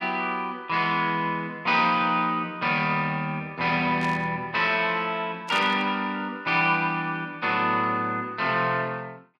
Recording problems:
static burst; at 4 s and at 5.5 s; peak -8 dB vs average level

